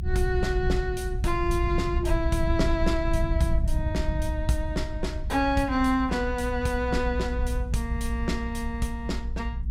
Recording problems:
rumble; below 74 Hz, SNR 2 dB

